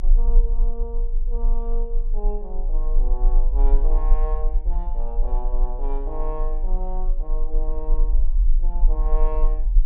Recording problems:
low-frequency rumble; below 34 Hz, strongest tone 24 Hz, SNR -11 dB

